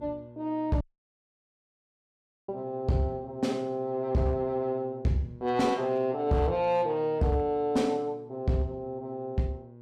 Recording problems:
distortion; hard clipping, signal-to-distortion ratio 12 dB
hum; 60 Hz, harmonics up to 960 Hz, SNR 20 dB
dropout; at 1 s for 1.5 s

